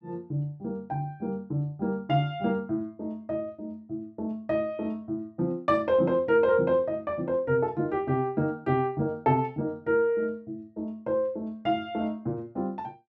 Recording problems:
none

